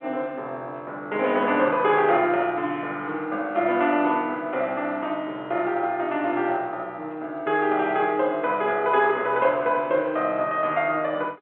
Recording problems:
telephone audio; 260 Hz to 3.4 kHz, G.711

